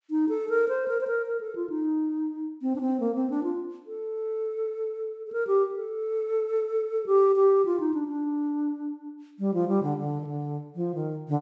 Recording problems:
treble missing; nothing above 8 kHz

